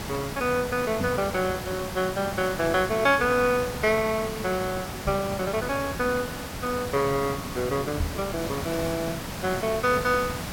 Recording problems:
background hiss; slope -4 dB per octave, SNR 7 dB
knock on the microphone; at 1 s, at 5 s and at 8 s; peak 0 dB vs average level

